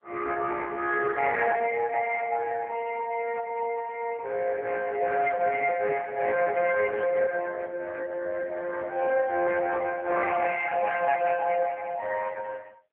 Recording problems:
phone line; 340 Hz to 2 kHz, AMR-NB

